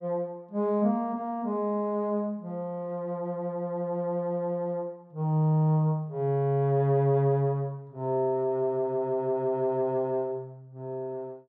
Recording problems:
none

